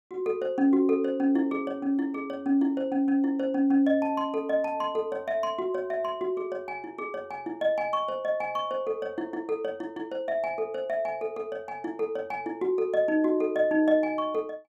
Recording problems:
none

